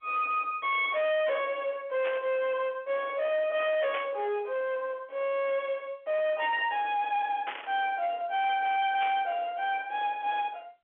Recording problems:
phone line; 320 Hz to 3.7 kHz, G.711
distorted audio; hard clipping, signal-to-distortion ratio 7 dB
static burst; 4 times, first at 2 s; peak -5 dB vs average level

